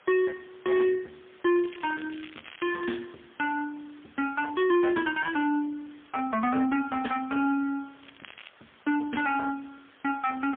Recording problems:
phone line; 170 Hz to 3.3 kHz, AMR-NB, then MP3
distortion; soft clipping, signal-to-distortion ratio 12 dB
hiss; SNR 27 dB
crackle; from 1.5 to 3 s and at 8 s; loose cable, SNR 19 dB

